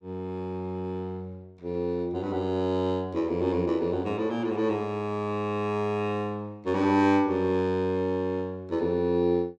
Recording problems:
none

